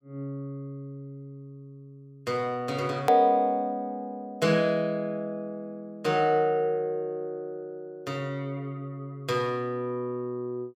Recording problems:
edit click; at 3 s

